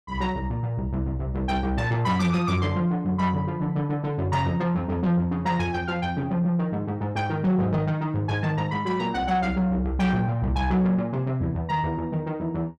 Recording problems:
distorted audio; soft clipping, signal-to-distortion ratio 10 dB

